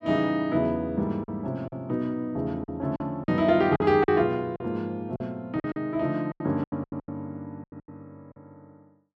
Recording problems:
packet loss; 11% of the sound replaced, filled with silence

